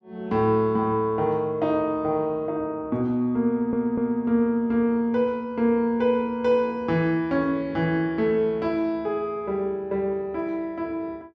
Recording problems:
audio stuttering; at 3.5 s

